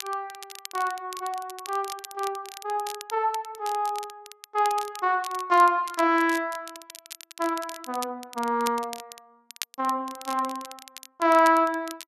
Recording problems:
crackling; vinyl, SNR 15 dB

